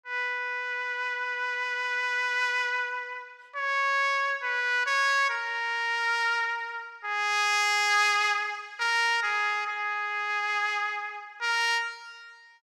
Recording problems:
none

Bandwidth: 16 kHz